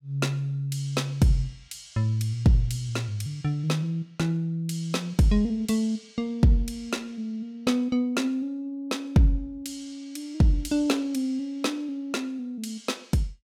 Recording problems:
none

